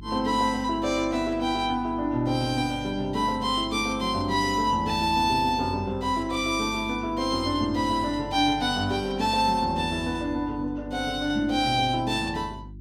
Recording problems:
hum; 50 Hz, harmonics up to 350 Hz, SNR 17 dB

